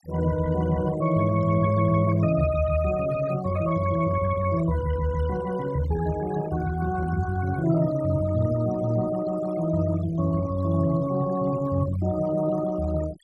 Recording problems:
denoising artefacts; signal-to-artefact ratio 18 dB

